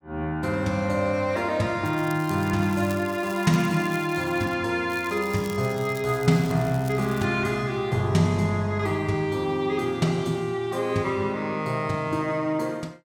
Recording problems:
crackle; from 2 to 4.5 s and from 5 to 7.5 s; loose cable, SNR 20 dB

